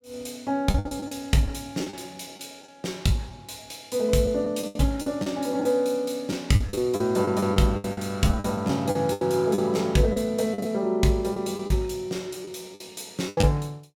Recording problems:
packet loss; 10% of the sound replaced, filled with the last packet

